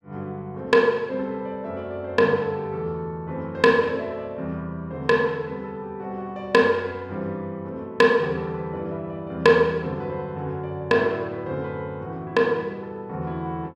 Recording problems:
none

